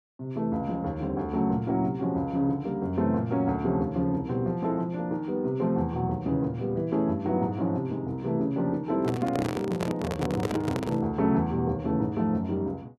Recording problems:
handling noise; from 9 to 11 s; peak +1 dB vs average level

